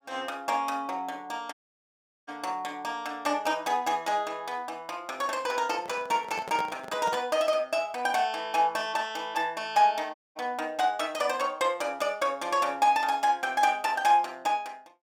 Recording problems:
audio cutting out; at 1.5 s for 0.5 s and at 10 s
microphone handling noise; from 6 to 7 s; peak -4 dB vs average level

